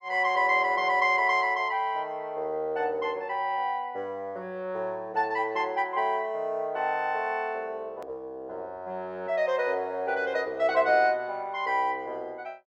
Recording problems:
click at an edit; at 8 s

